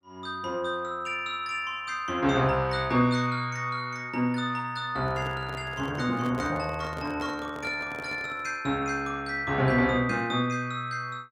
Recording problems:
microphone handling noise; from 5 to 8.5 s; peak -6 dB vs average level

